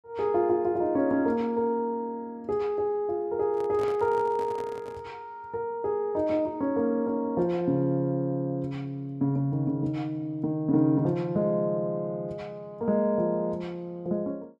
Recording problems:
handling noise; from 3.5 to 5 s; peak -8 dB vs average level

